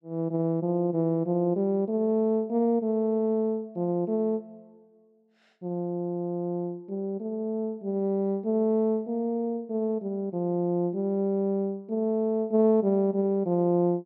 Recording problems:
none

